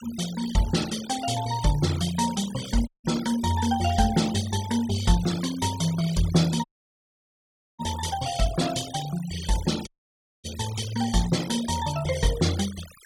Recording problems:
noise reduction artefacts; signal-to-artefact ratio 12 dB
dropout; at 3 s, at 6.5 s for 1 s and at 10 s for 0.5 s

